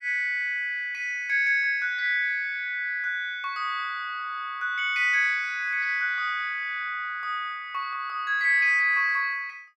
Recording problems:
none

